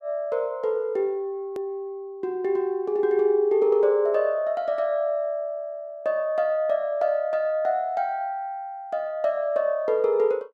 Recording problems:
hard cut with a click; at 1.5 s

